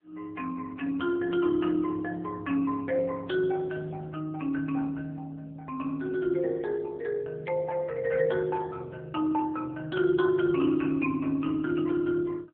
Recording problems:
phone line; 190 Hz to 2.6 kHz, AMR-NB

